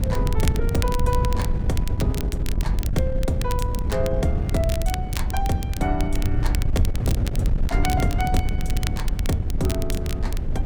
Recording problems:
wind noise; below 100 Hz, SNR -3 dB
crackling; vinyl, SNR 9 dB

